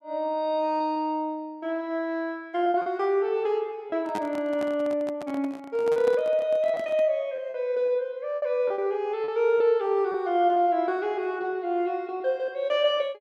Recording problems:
packet loss; 5% of the sound replaced, filled with repeated pitch periods
microphone handling noise; from 4 to 7 s; peak -4 dB vs average level

